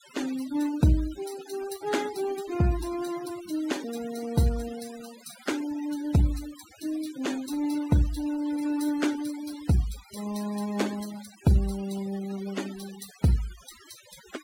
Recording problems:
denoising artefacts; signal-to-artefact ratio 16 dB

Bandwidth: 16.5 kHz